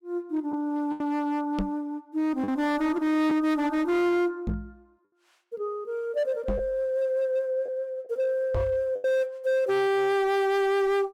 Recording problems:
distorted audio; hard clipping, signal-to-distortion ratio 7 dB
packet loss; 3% of the sound replaced, filled with the last packet
knock on the microphone; 4 times, first at 1.5 s; peak +1 dB vs average level

